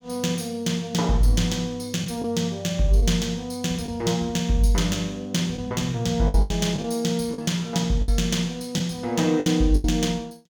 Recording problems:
lost packets; 5% of the sound replaced, filled with the last packet

